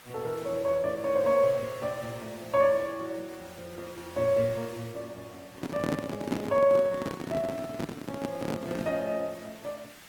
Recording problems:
codec artefacts; Opus, log-spectral distance 4 dB
hiss; SNR 20 dB
handling noise; from 5.5 to 9 s; peak +3 dB vs average level

